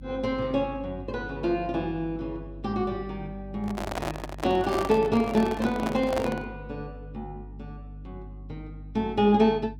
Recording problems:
electrical hum; 50 Hz, harmonics up to 300 Hz, SNR 16 dB
handling noise; from 3.5 to 6.5 s; peak 0 dB vs average level

